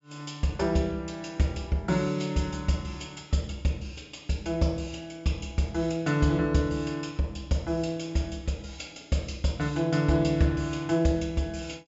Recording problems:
low-pass filter; nothing above 8 kHz

